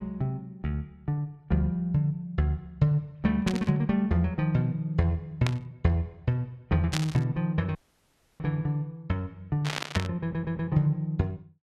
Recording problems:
burst of static; 4 times, first at 3.5 s; peak +2 dB vs average level
audio cutting out; at 8 s for 0.5 s
audio stuttering; at 10 s

